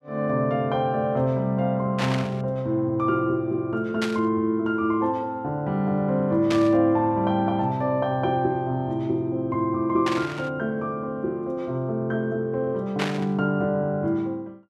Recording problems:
static burst; 5 times, first at 2 s; peak 0 dB vs average level

